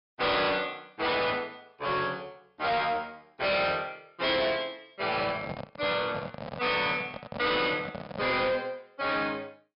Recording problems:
low-pass filter; nothing above 5.5 kHz
distortion; soft clipping, signal-to-distortion ratio 6 dB
handling noise; from 5 to 8.5 s; peak -4 dB vs average level

